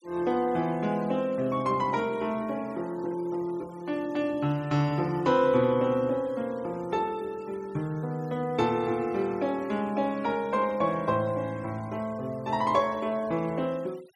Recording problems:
noise reduction artefacts; signal-to-artefact ratio 25 dB

